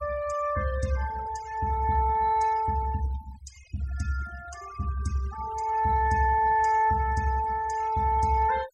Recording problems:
noise reduction artefacts; signal-to-artefact ratio 18 dB

